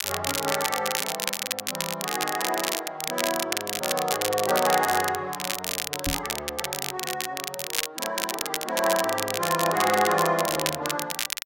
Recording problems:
crackle; vinyl, SNR 2 dB
knock on the microphone; at 6 s; peak 0 dB vs average level

